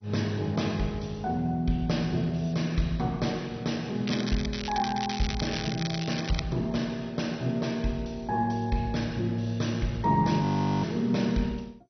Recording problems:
lossy codec; MP2, log-spectral distance 5 dB, nothing above 6 kHz
crackle; from 4 to 6.5 s; loose cable, SNR 8 dB
audio freezing; at 10 s

